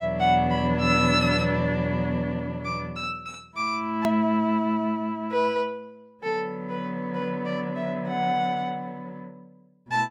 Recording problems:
hard cut with a click; at 4 s

